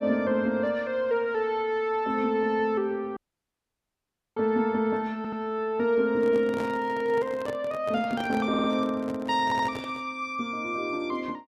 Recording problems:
audio cutting out; at 3 s for 1 s
audio stuttering; at 5 s, at 8.5 s and at 9.5 s
microphone handling noise; from 6 to 10 s; peak -5 dB vs average level

